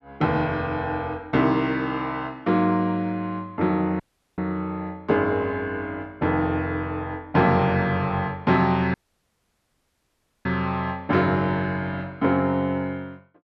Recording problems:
audio cutting out; at 4 s and at 9 s for 1.5 s

